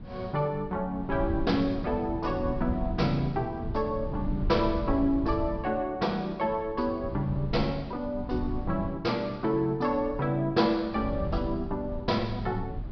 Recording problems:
low-pass filter; nothing above 5.5 kHz
wind on the microphone; below 150 Hz, SNR 8 dB

